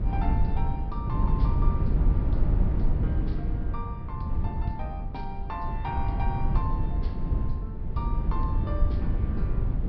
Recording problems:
treble missing; nothing above 5.5 kHz
wind on the microphone; below 100 Hz, SNR -9 dB

